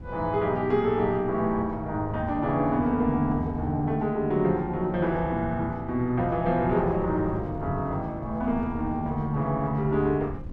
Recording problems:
wind on the microphone; below 160 Hz, SNR 15 dB

